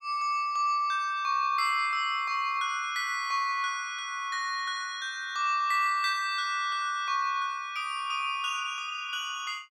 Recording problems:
none

